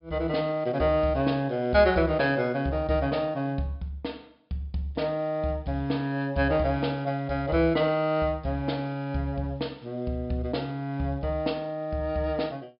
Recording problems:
treble cut off; nothing above 5.2 kHz

